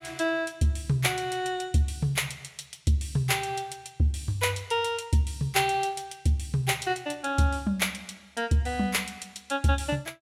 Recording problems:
none

